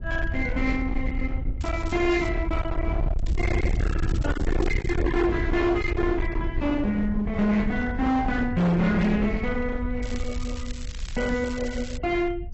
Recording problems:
lossy codec; AAC, log-spectral distance 2 dB, nothing above 7.6 kHz
distortion; hard clipping, signal-to-distortion ratio 6 dB
wind on the microphone; below 110 Hz, SNR 4 dB
crackling; at 1.5 s, from 3 to 5 s and from 10 to 12 s; loose cable, SNR 18 dB

